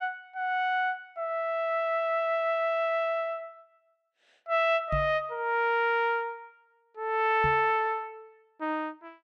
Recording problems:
microphone bump; at 5 s and at 7.5 s; peak -1 dB vs average level

